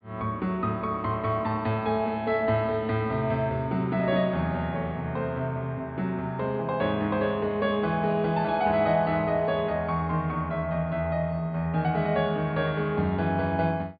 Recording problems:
treble missing; nothing above 4.8 kHz

